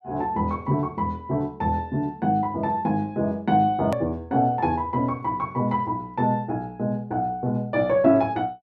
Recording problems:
click at an edit; at 4 s

